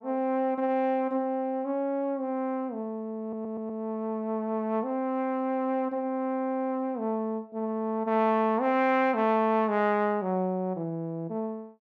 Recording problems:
stutter; at 3 s

